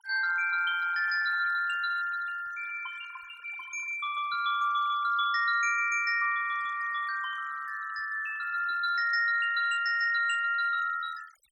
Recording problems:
noise reduction artefacts; signal-to-artefact ratio 17 dB

